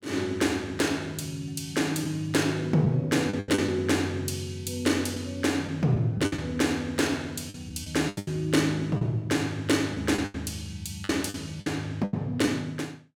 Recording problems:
packet loss; 7% of the sound replaced, filled with the last packet

